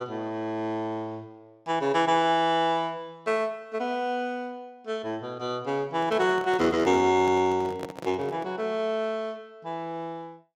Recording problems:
microphone handling noise; from 6 to 8.5 s; peak -5 dB vs average level

